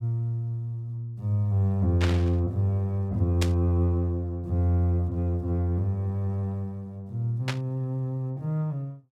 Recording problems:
burst of static; at 2 s, at 3.5 s and at 7.5 s; peak 0 dB vs average level

